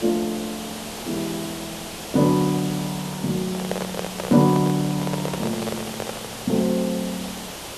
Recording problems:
hiss; slope -3 dB per octave, SNR 9 dB
handling noise; from 3.5 to 6.5 s; peak 0 dB vs average level

